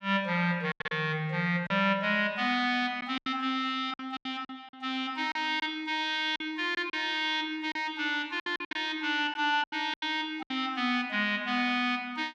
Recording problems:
lost packets; 9% of the sound replaced, filled with silence

